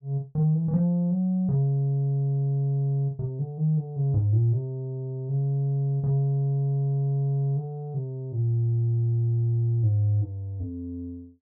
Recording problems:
none

